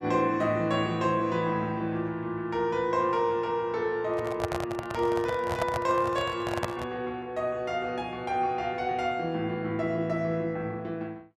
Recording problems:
microphone handling noise; from 4 to 7 s; peak +3 dB vs average level

